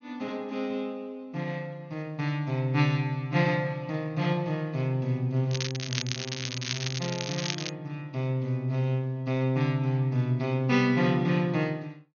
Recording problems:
low-pass filter; nothing above 6.6 kHz
crackling; from 5.5 to 7.5 s; loose cable, SNR 5 dB

